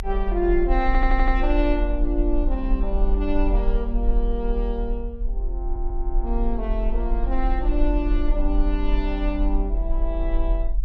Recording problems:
low-frequency rumble; below 42 Hz, strongest tone 40 Hz, SNR -1 dB
audio stuttering; at 1 s and at 5.5 s

